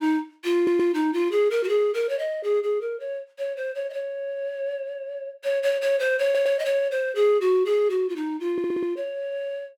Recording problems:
stutter; at 0.5 s, at 6 s and at 8.5 s

